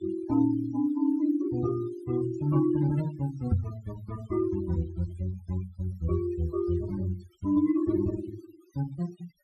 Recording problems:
denoising artefacts; signal-to-artefact ratio 19 dB
knock on the microphone; at 3.5 s; peak +7 dB vs average level

